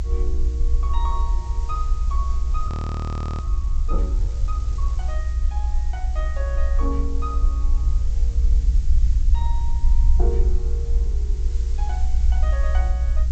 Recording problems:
treble missing; nothing above 8 kHz
hiss; slope 0 dB per octave, SNR 13 dB
rumble; below 60 Hz, SNR -12 dB
audio freezing; at 2.5 s for 0.5 s

